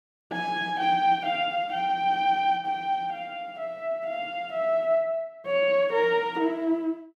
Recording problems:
none

